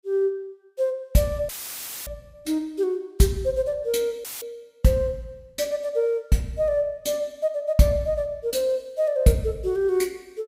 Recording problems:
audio cutting out; at 1.5 s for 0.5 s and at 4 s; filled with static

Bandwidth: 15.5 kHz